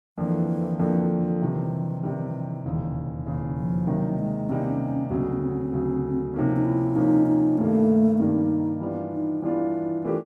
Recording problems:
none

